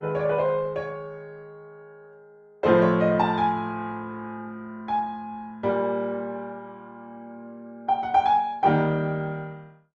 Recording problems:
lossy compression; Opus, log-spectral distance 2 dB

